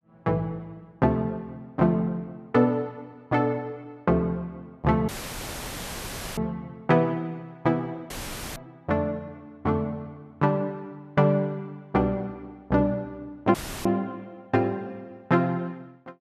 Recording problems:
audio cutting out; at 5 s for 1.5 s, at 8 s and at 14 s; filled with static

